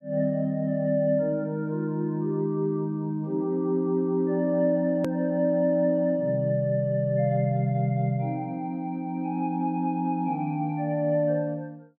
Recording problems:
click at an edit; at 5 s

